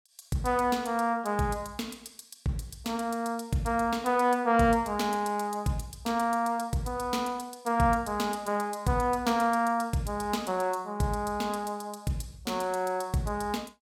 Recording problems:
none

